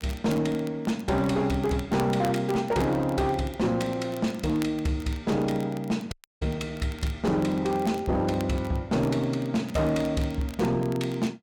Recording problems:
distorted audio; hard clipping, signal-to-distortion ratio 11 dB
crackling; vinyl, SNR 21 dB
audio cutting out; at 6 s

